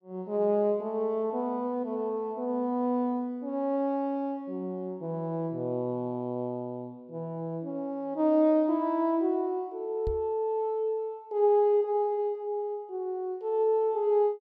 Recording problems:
knock on the microphone; at 10 s; peak -2 dB vs average level

